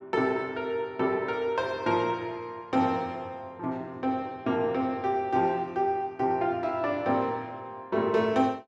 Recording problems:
none

